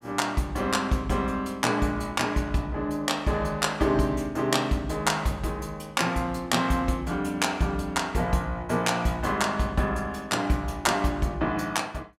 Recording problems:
none

